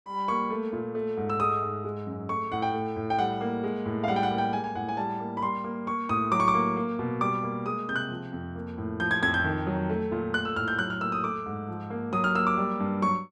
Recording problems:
none

